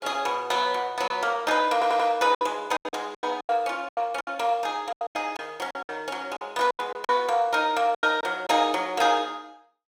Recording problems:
lost packets; 12% of the sound replaced, filled with silence
audio stuttering; at 1.5 s

